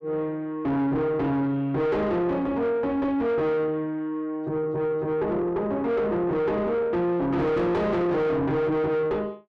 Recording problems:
distortion; soft clipping, signal-to-distortion ratio 6 dB

